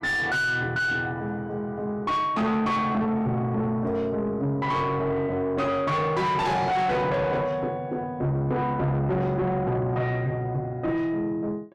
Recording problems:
distorted audio; soft clipping, signal-to-distortion ratio 6 dB

